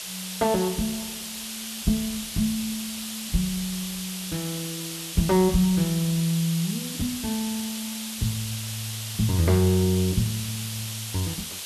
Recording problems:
background hiss; slope +3 dB per octave, SNR 6 dB

